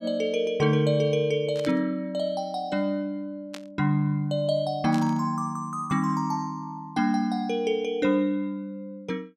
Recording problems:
static burst; at 1.5 s, at 3.5 s and at 5 s; peak -8 dB vs average level

